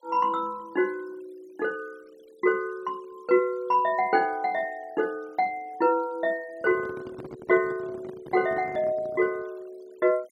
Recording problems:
noise reduction artefacts; signal-to-artefact ratio 27 dB
handling noise; from 6.5 to 9.5 s; peak -10 dB vs average level

